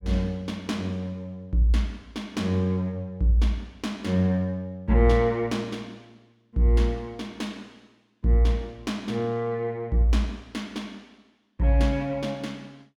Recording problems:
none

